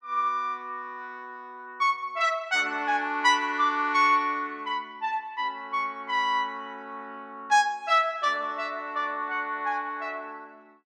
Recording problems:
none

